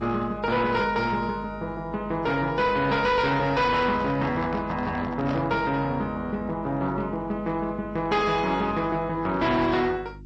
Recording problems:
codec artefacts; MP3, then G.722, log-spectral distance 2 dB, nothing above 8 kHz
distorted audio; hard clipping, signal-to-distortion ratio 10 dB
electrical hum; 50 Hz, harmonics up to 350 Hz, SNR 18 dB
microphone handling noise; from 4 to 5.5 s; peak -5 dB vs average level

